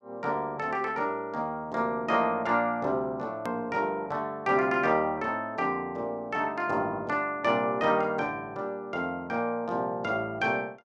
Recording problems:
edit click; at 3.5 s

